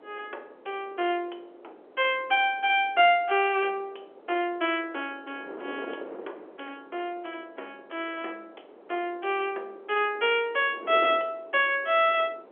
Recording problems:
phone line; 300 Hz to 3.4 kHz, G.711
wind noise; below 620 Hz, SNR 20 dB

